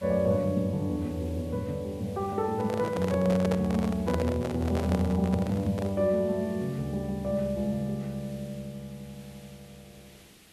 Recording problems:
background hiss; SNR 23 dB
microphone handling noise; from 2.5 to 6 s; peak +1 dB vs average level

